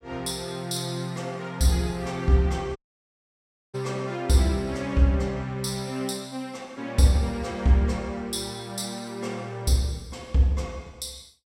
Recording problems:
dropout; at 3 s for 1 s

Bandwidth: 16 kHz